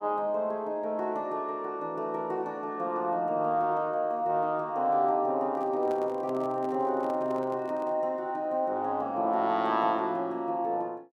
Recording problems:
handling noise; from 5.5 to 8 s; peak -8 dB vs average level

